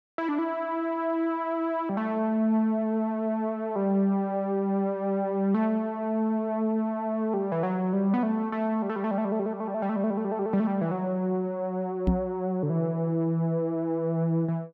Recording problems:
microphone bump; at 12 s; peak +6 dB vs average level

